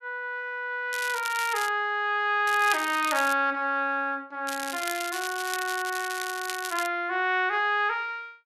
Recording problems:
crackling; at 1 s, at 2.5 s and from 4.5 to 7 s; loose cable, SNR 10 dB

